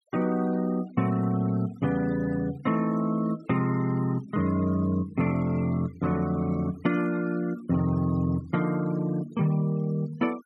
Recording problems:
noise reduction artefacts; signal-to-artefact ratio 22 dB

